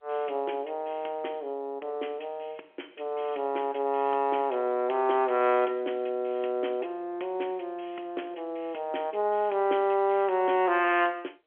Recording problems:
phone line; 280 Hz to 3.3 kHz, G.711

